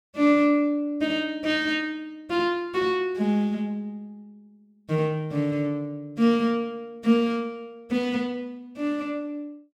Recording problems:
none

